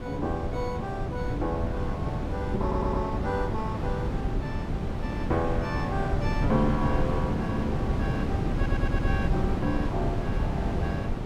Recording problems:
wind on the microphone; below 260 Hz, SNR -3 dB
stutter; at 2.5 s and at 8.5 s

